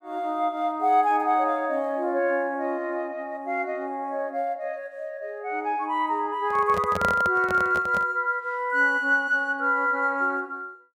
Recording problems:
microphone handling noise; from 6.5 to 8 s; peak 0 dB vs average level

